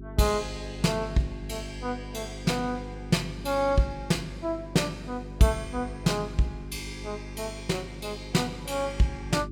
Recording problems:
hum; 50 Hz, harmonics up to 400 Hz, SNR 11 dB

